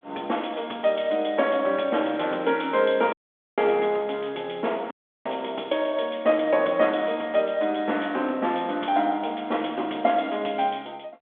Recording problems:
telephone audio; 260 Hz to 3.5 kHz, G.726
dropout; at 3 s and at 5 s

